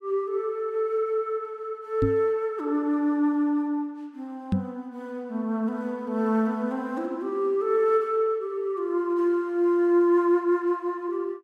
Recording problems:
knock on the microphone; at 2 s and at 4.5 s; peak +5 dB vs average level

